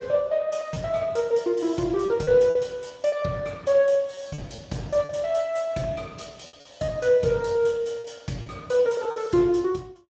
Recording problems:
lossy codec; Speex, log-spectral distance 4 dB, nothing above 7.6 kHz
lost packets; 7% of the sound replaced, filled with repeated pitch periods

